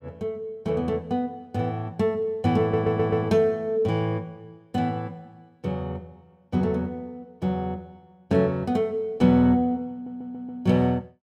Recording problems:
audio stuttering; at 2.5 s and at 10 s

